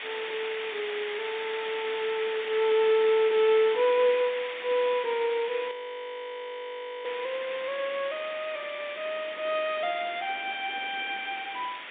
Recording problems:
telephone audio; 190 Hz to 3.7 kHz, G.711
background hiss; SNR 9 dB
audio freezing; at 5.5 s for 1.5 s

